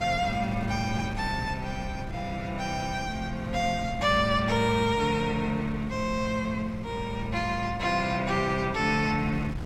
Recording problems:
wind noise; below 220 Hz, SNR 11 dB

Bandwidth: 16.5 kHz